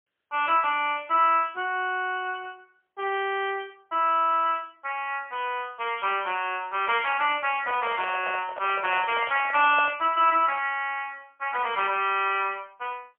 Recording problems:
phone line; 320 Hz to 3.3 kHz, AMR-NB, then MP3
handling noise; from 7.5 to 10 s; peak -3 dB vs average level

